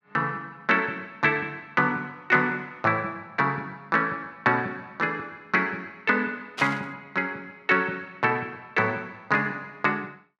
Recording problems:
static burst; at 6.5 s; peak -2 dB vs average level

